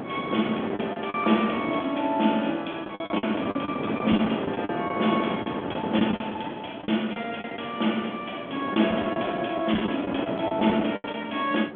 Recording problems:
phone line; 170 Hz to 3.4 kHz, G.726
wind noise; below 710 Hz, SNR 6 dB
packet loss; 12% of the sound replaced, filled with the last packet

